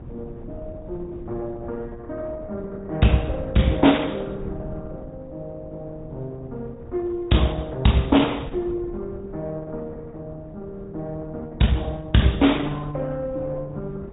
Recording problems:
treble missing; nothing above 3.8 kHz
lossy compression; Opus, log-spectral distance 2 dB
wind noise; below 180 Hz, SNR 16 dB

